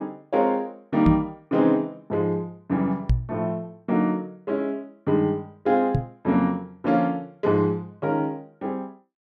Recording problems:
knock on the microphone; at 1 s, at 3 s and at 6 s; peak +7 dB vs average level

